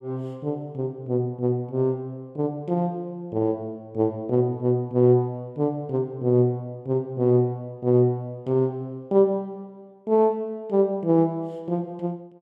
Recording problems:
none

